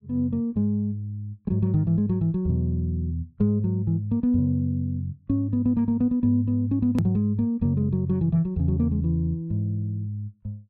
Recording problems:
edit click; at 7 s

